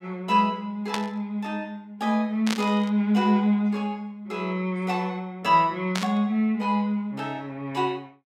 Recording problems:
burst of static; at 1 s, at 2.5 s and at 6 s; peak +1 dB vs average level

